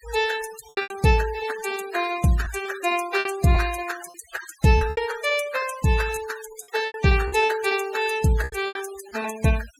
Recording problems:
noise reduction artefacts; signal-to-artefact ratio 16 dB
packet loss; 7% of the sound replaced, filled with repeated pitch periods

